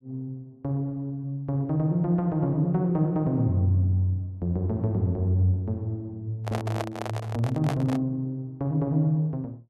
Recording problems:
handling noise; from 6.5 to 8 s; peak 0 dB vs average level

